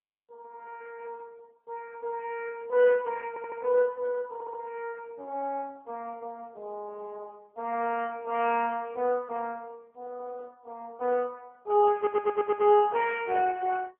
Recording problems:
telephone audio; 280 Hz to 3.3 kHz, AMR-NB
stutter; at 3.5 s, at 4.5 s and at 12 s

